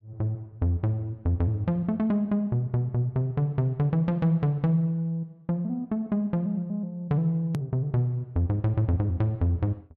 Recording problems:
click at an edit; at 7.5 s

